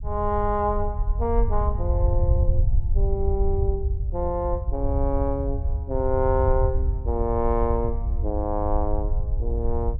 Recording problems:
low-frequency rumble; below 76 Hz, SNR -1 dB

